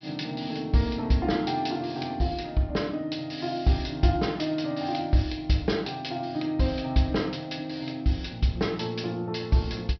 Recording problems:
low-pass filter; nothing above 5.5 kHz

